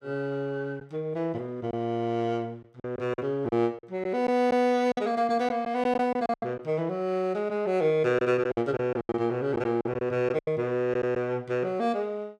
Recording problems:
lost packets; 7% of the sound replaced, filled with silence

